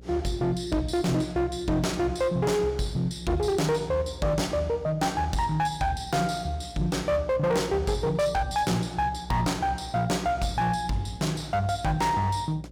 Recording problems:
distortion; hard clipping, signal-to-distortion ratio 11 dB
electrical hum; 60 Hz, harmonics up to 600 Hz, SNR 18 dB

